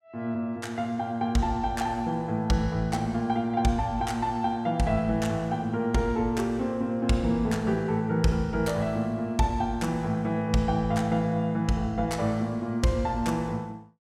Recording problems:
none

